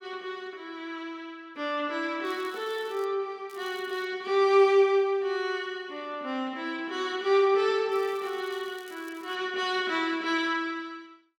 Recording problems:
crackle; at 2.5 s, at 3.5 s and from 8 to 9.5 s; loose cable, SNR 26 dB

